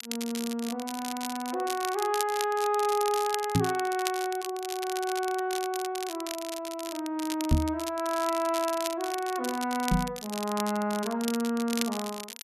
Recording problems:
crackling; vinyl, SNR 8 dB
microphone thump; at 3.5 s, at 7.5 s and at 10 s; peak +9 dB vs average level

